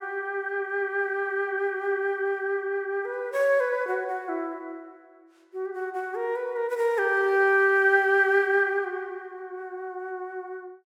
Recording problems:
none

